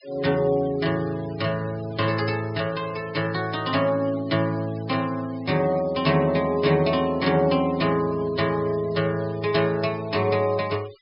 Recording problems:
low-pass filter; nothing above 5.5 kHz
denoising artefacts; signal-to-artefact ratio 20 dB

